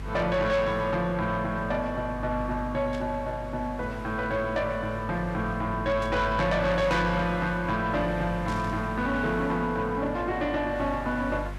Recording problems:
distorted audio; soft clipping, signal-to-distortion ratio 10 dB
hum; 50 Hz, harmonics up to 450 Hz, SNR 12 dB
hiss; SNR 20 dB
static burst; at 3 s, at 6 s and at 8.5 s; peak -11 dB vs average level

